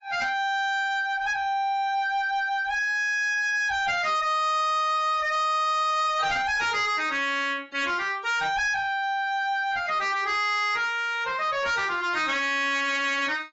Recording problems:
lossy compression; AAC, log-spectral distance 2 dB, nothing above 6.9 kHz
distortion; soft clipping, signal-to-distortion ratio 11 dB

